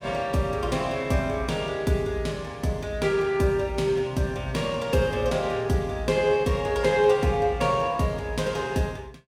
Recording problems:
none

